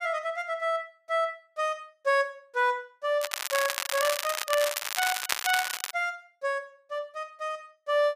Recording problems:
crackling; from 3 to 6 s; loose cable, SNR 1 dB

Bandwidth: 15 kHz